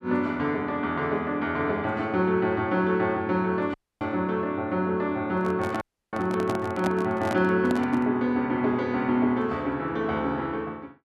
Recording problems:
dropout; at 3.5 s and at 6 s
microphone handling noise; from 5.5 to 8 s; peak -1 dB vs average level

